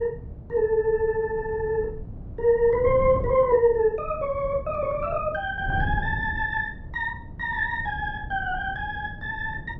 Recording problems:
wind on the microphone; below 150 Hz, SNR 12 dB

